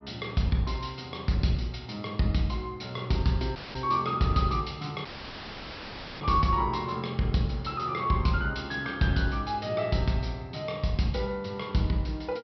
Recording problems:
low-pass filter; nothing above 5.5 kHz
audio cutting out; at 3.5 s and at 5 s for 1 s; filled with static

